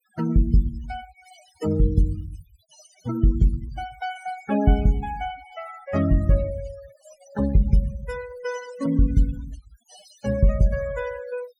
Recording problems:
noise reduction artefacts; signal-to-artefact ratio 16 dB

